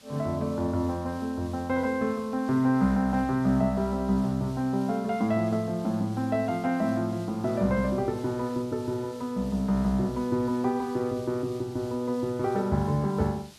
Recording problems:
hiss; SNR 23 dB

